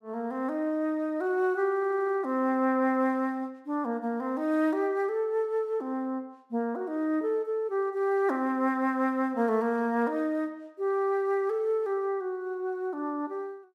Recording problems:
audio stuttering; at 2 s

